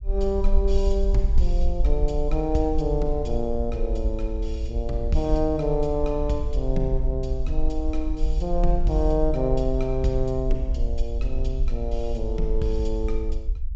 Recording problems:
treble missing; nothing above 8 kHz
low-frequency rumble; below 48 Hz, SNR 1 dB

